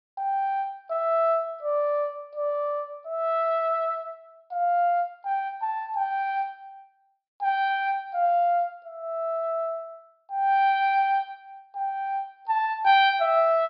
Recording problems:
low-pass filter; nothing above 5.3 kHz

